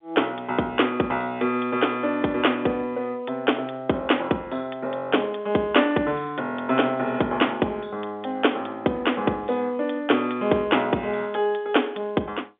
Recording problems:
phone line; 170 Hz to 3.6 kHz, G.711

